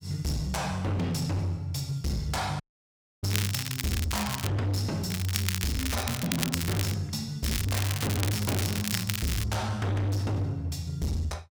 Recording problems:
distortion; hard clipping, signal-to-distortion ratio 7 dB
audio cutting out; at 2.5 s for 0.5 s
crackle; from 3.5 to 4.5 s, from 5 to 7 s and from 7.5 to 9.5 s; loose cable, SNR 3 dB

